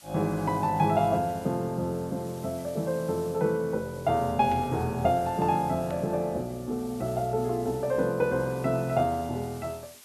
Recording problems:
hiss; slope +1 dB per octave, SNR 22 dB
burst of static; at 4.5 s and at 6 s; peak -12 dB vs average level

